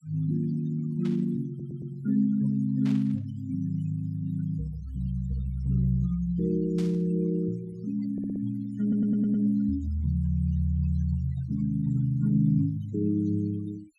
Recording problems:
denoising artefacts; signal-to-artefact ratio 23 dB
burst of static; at 1 s, at 3 s and at 7 s; peak -13 dB vs average level
audio stuttering; at 1.5 s, at 8 s and at 9 s

